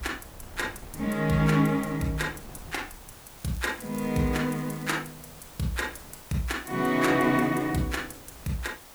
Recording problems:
background hiss; slope -2 dB per octave, SNR 19 dB
wind on the microphone; below 520 Hz, SNR 22 dB
crackling; from 3.5 to 5 s; loose cable, SNR 24 dB

